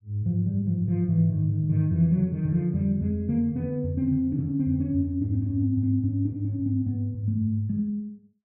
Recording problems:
none

